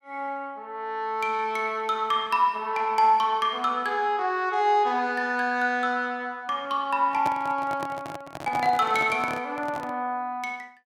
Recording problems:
microphone handling noise; from 7 to 10 s; peak -3 dB vs average level

